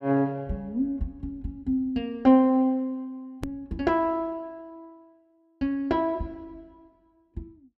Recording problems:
edit click; at 3.5 s

